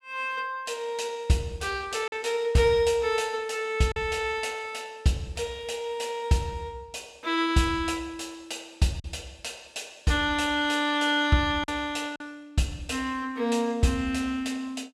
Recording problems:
lost packets; 1.4% of the sound replaced, filled with silence

